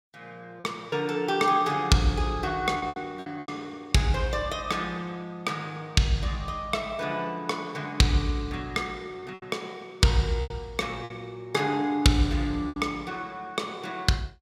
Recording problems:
packet loss; 5% of the sound replaced, filled with repeated pitch periods

